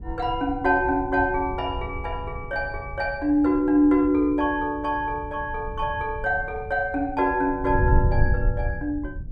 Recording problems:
wind on the microphone; below 98 Hz, SNR 8 dB

